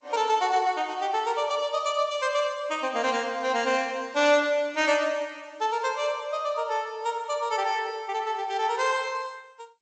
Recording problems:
lossy compression; MP3, then G.722, log-spectral distance 2 dB, nothing above 7.8 kHz

